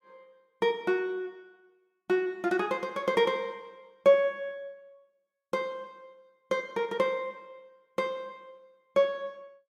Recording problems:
none

